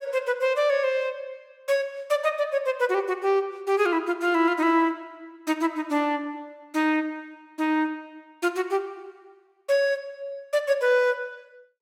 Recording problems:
none

